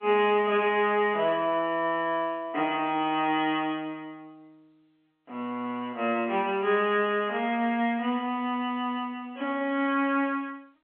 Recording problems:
phone line; 220 Hz to 3.2 kHz, G.711

